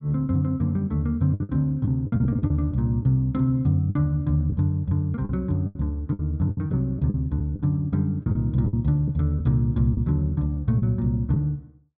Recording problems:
lost packets; 9% of the sound replaced, filled with the last packet

